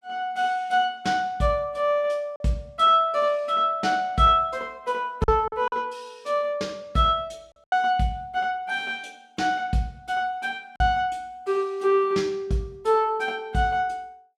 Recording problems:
lost packets; 2% of the sound replaced, filled with silence

